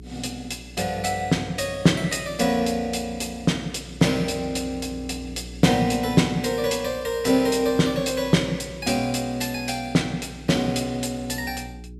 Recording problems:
hum; 60 Hz, harmonics up to 420 Hz, SNR 19 dB

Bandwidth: 14 kHz